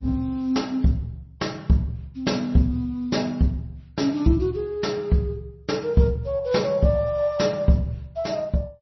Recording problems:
lossy codec; MP2, then MP3, log-spectral distance 2 dB, nothing above 5.8 kHz

